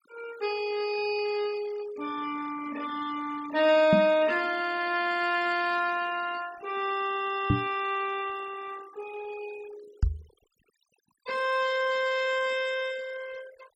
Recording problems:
denoising artefacts; signal-to-artefact ratio 18 dB
microphone thump; at 4 s, at 7.5 s and at 10 s; peak +7 dB vs average level

